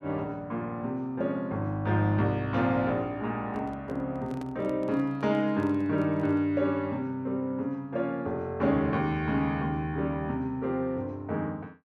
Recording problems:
microphone handling noise; from 3.5 to 6.5 s; peak -10 dB vs average level

